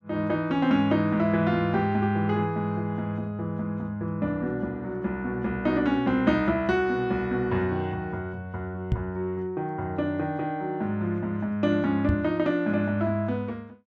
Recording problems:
microphone bump; at 9 s and at 12 s; peak +4 dB vs average level

